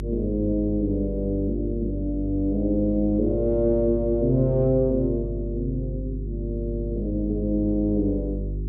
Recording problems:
electrical hum; 50 Hz, harmonics up to 400 Hz, SNR 7 dB

